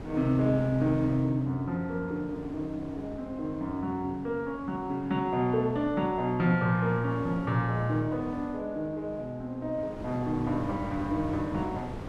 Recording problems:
wind on the microphone; below 530 Hz, SNR 14 dB

